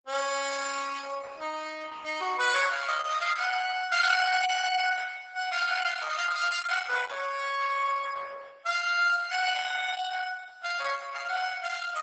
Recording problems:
lossy compression; Opus, log-spectral distance 6 dB, nothing above 7.6 kHz

